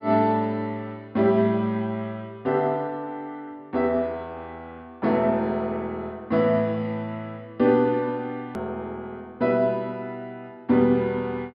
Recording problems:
treble cut off; nothing above 5.5 kHz
edit click; at 8.5 s

